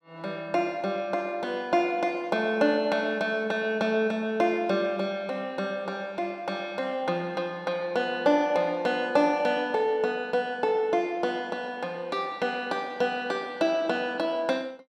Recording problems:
none

